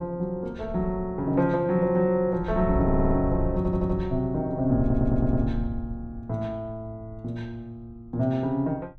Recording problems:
wind on the microphone; below 88 Hz, SNR 8 dB
audio stuttering; at 3 s, at 3.5 s and at 5 s

